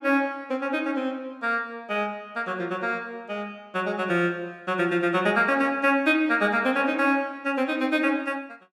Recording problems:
none

